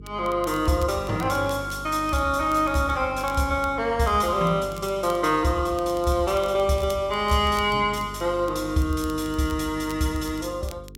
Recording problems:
hum; 50 Hz, harmonics up to 450 Hz, SNR 16 dB
crackle; vinyl, SNR 24 dB

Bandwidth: 16 kHz